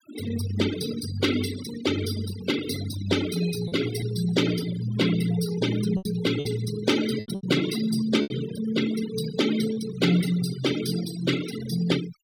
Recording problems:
denoising artefacts; signal-to-artefact ratio 9 dB
lost packets; 4% of the sound replaced, filled with repeated pitch periods

